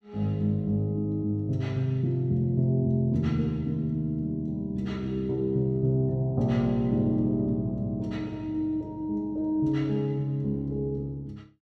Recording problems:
none

